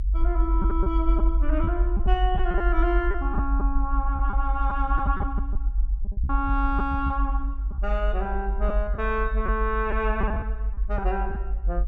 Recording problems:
rumble; below 52 Hz, SNR -2 dB
lost packets; 7% of the sound replaced, filled with repeated pitch periods

